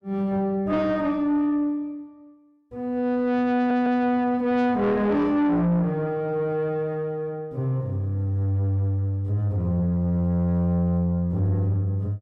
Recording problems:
distortion; soft clipping, signal-to-distortion ratio 10 dB
audio stuttering; at 3.5 s

